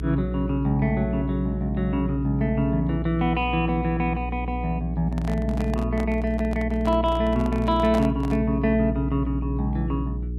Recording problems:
electrical hum; 60 Hz, harmonics up to 420 Hz, SNR 5 dB
handling noise; from 5 to 8.5 s; peak -4 dB vs average level

